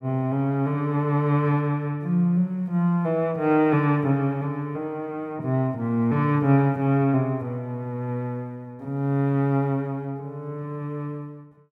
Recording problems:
none

